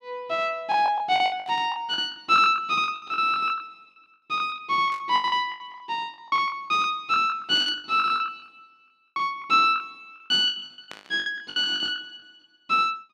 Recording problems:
packet loss; 19% of the sound replaced, filled with the last packet
static burst; 4 times, first at 1.5 s; peak -11 dB vs average level

